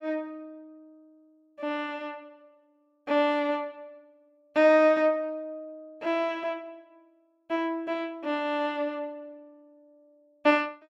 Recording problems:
none

